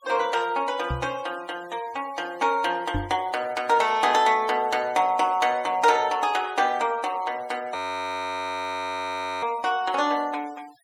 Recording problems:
denoising artefacts; signal-to-artefact ratio 21 dB
microphone bump; at 1 s and at 3 s; peak 0 dB vs average level
audio freezing; at 8 s for 1.5 s

